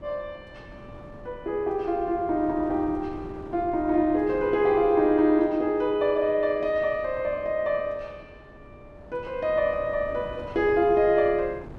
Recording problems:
wind on the microphone; below 430 Hz, SNR 20 dB

